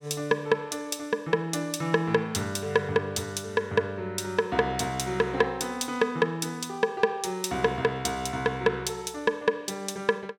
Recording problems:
none

